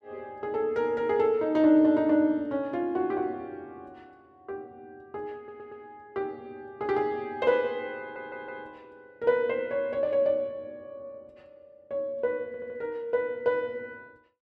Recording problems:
stutter; at 5.5 s, at 8 s and at 12 s

